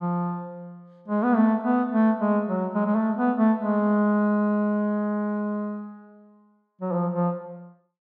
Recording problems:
none

